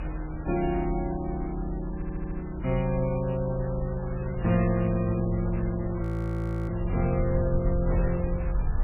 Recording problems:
lossy codec; MP3, then MP3, log-spectral distance 3 dB, nothing above 13.3 kHz
low-frequency rumble; below 62 Hz, strongest tone 40 Hz, SNR 6 dB
wind noise; below 990 Hz, SNR 13 dB
stutter; at 2 s
audio freezing; at 6 s for 0.5 s

